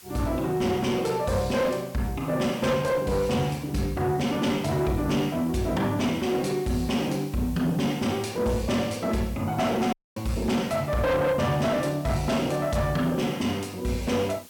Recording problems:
distorted audio; soft clipping, signal-to-distortion ratio 11 dB
background hiss; slope +1 dB per octave, SNR 21 dB
audio cutting out; at 10 s

